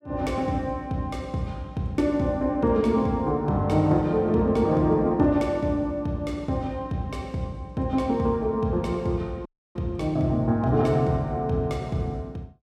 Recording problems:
dropout; at 9.5 s

